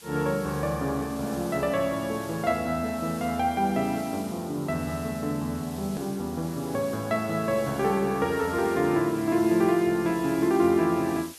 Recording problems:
background hiss; slope +1 dB per octave, SNR 18 dB
hard cut with a click; at 6 s

